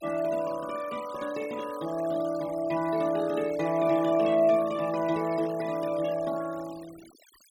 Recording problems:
noise reduction artefacts; signal-to-artefact ratio 19 dB

